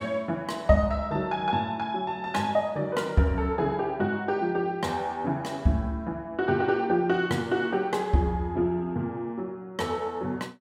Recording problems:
none

